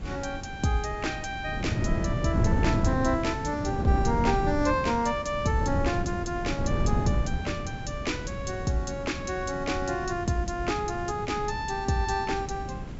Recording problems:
low-pass filter; nothing above 8 kHz
hiss; SNR 24 dB
wind noise; below 210 Hz, SNR 3 dB

